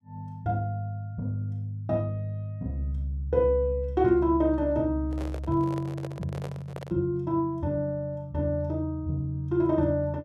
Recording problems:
microphone handling noise; from 5 to 7 s; peak -6 dB vs average level

